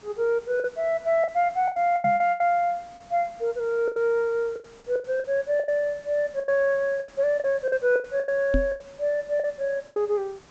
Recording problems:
treble missing; nothing above 8 kHz
background hiss; slope -4 dB per octave, SNR 27 dB
lost packets; 14% of the sound replaced, filled with the last packet
knock on the microphone; at 2 s and at 8.5 s; peak +3 dB vs average level

